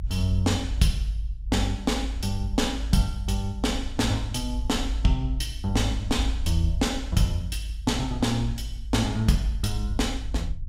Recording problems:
rumble; below 56 Hz, strongest tone 52 Hz, SNR 5 dB

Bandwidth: 16 kHz